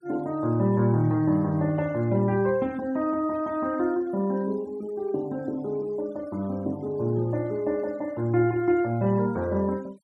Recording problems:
denoising artefacts; signal-to-artefact ratio 26 dB

